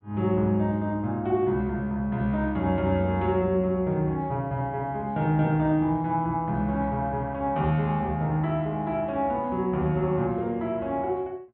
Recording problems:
treble missing; nothing above 4 kHz

